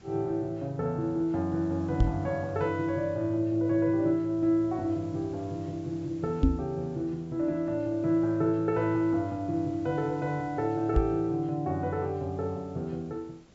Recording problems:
low-pass filter; nothing above 8 kHz
hiss; slope -4 dB per octave, SNR 25 dB
knock on the microphone; at 2 s, at 6.5 s and at 11 s; peak +9 dB vs average level

